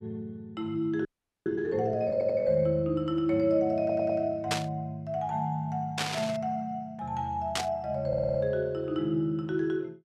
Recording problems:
frozen audio; at 1 s
audio stuttering; at 2 s, at 4 s and at 8 s
burst of static; at 4.5 s, at 6 s and at 7.5 s; peak +5 dB vs average level

